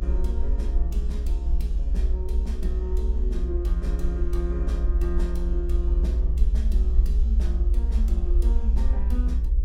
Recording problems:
electrical hum; 60 Hz, harmonics up to 540 Hz, SNR 16 dB
rumble; below 60 Hz, SNR -11 dB

